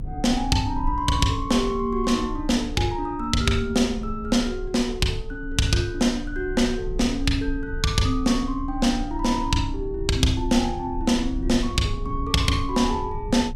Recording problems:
low-frequency rumble; below 66 Hz, strongest tone 28 Hz, SNR 11 dB

